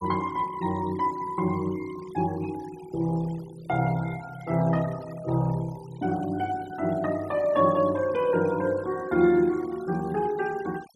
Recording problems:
denoising artefacts; signal-to-artefact ratio 20 dB

